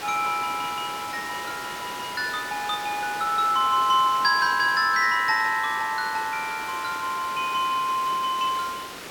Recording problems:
hiss; slope -3 dB per octave, SNR 12 dB

